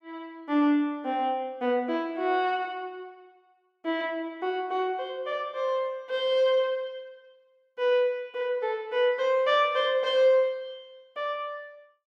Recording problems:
none

